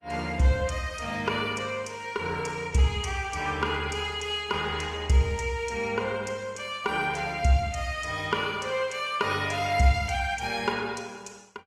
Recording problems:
lossy codec; Opus, log-spectral distance 3 dB, nothing above 18.9 kHz

